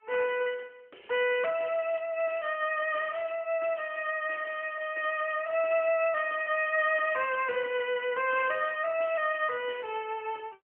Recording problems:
telephone audio; 300 Hz to 3.1 kHz, AMR-NB

